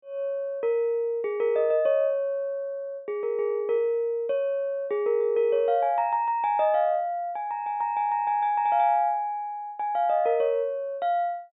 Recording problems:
low-pass filter; nothing above 4 kHz

